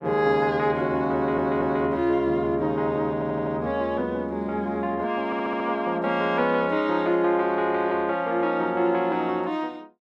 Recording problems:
audio stuttering; at 1 s, at 3 s and at 5.5 s

